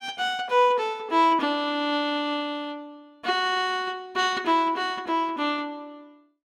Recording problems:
none

